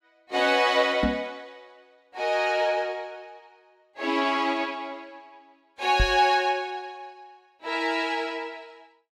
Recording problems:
microphone bump; at 1 s and at 6 s; peak +3 dB vs average level

